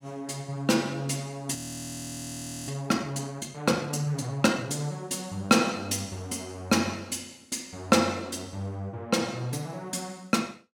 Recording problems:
audio freezing; at 1.5 s for 1 s

